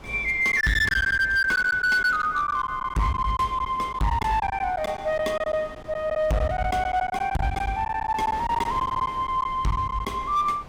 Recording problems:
distorted audio; hard clipping, signal-to-distortion ratio 10 dB
wind noise; below 820 Hz, SNR 19 dB
lost packets; 10% of the sound replaced, filled with silence

